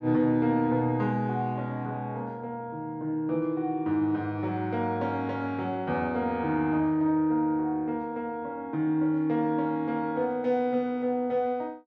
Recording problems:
none

